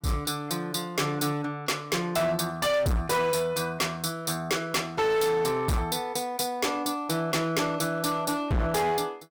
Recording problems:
distorted audio; hard clipping, signal-to-distortion ratio 6 dB

